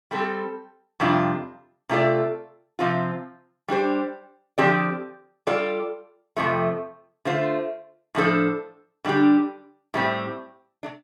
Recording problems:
none

